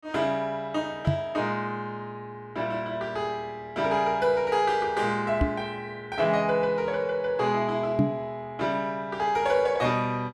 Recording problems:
knock on the microphone; at 1 s, at 5.5 s and at 8 s; peak +7 dB vs average level

